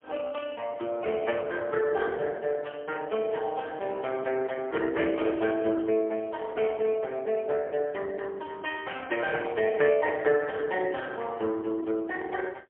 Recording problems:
telephone audio; 280 Hz to 2.9 kHz, AMR-NB, then MP3

